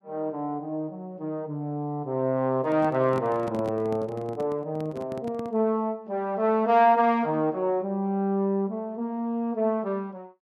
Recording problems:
handling noise; from 2.5 to 5.5 s; peak -6 dB vs average level

